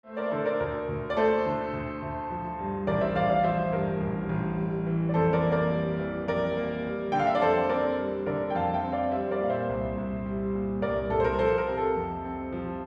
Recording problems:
none

